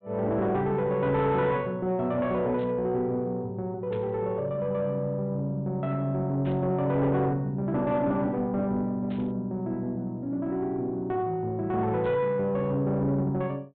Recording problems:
low-pass filter; nothing above 4 kHz
distorted audio; soft clipping, signal-to-distortion ratio 10 dB
static burst; 5 times, first at 2.5 s; peak -15 dB vs average level

